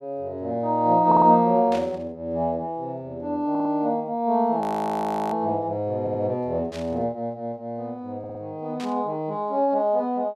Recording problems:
audio stuttering; 4 times, first at 1 s
static burst; at 1.5 s, at 6.5 s and at 9 s; peak -9 dB vs average level
frozen audio; at 4.5 s for 0.5 s

